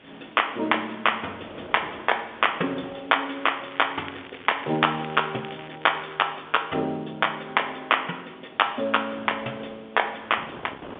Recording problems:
telephone audio; 240 Hz to 3.5 kHz, G.711
hiss; SNR 27 dB
wind noise; below 1.1 kHz, SNR 21 dB
crackle; from 3.5 to 6 s; loose cable, SNR 18 dB

